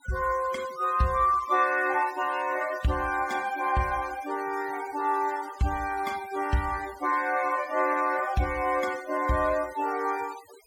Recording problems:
noise reduction artefacts; signal-to-artefact ratio 20 dB

